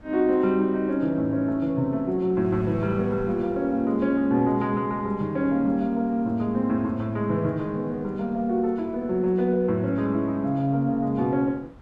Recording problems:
wind noise; below 460 Hz, SNR 24 dB

